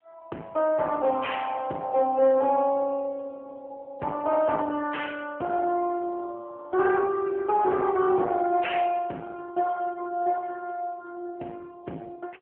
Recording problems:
telephone audio; 220 Hz to 3.2 kHz, AMR-NB
distorted audio; soft clipping, signal-to-distortion ratio 11 dB

